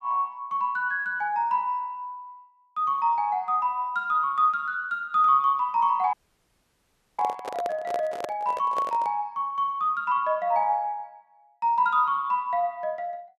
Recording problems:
microphone handling noise; from 6 to 9 s; peak -3 dB vs average level
audio cutting out; at 6 s for 1 s

